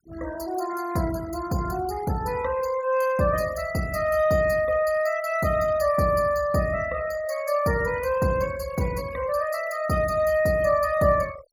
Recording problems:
noise reduction artefacts; signal-to-artefact ratio 18 dB

